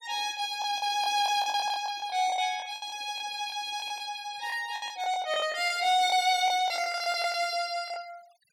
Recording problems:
denoising artefacts; signal-to-artefact ratio 22 dB
packet loss; 13% of the sound replaced, filled with the last packet

